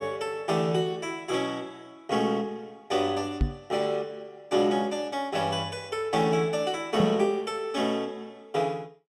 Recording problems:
knock on the microphone; at 3.5 s and at 7 s; peak +6 dB vs average level

